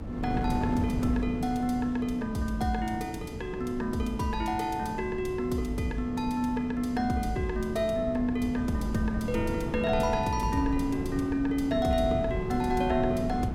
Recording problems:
electrical hum; 60 Hz, harmonics up to 360 Hz, SNR 16 dB
wind on the microphone; below 270 Hz, SNR 7 dB

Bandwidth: 16 kHz